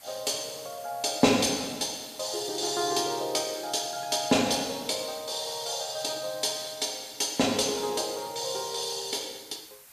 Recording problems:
background hiss; slope +1 dB per octave, SNR 20 dB

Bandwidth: 14.5 kHz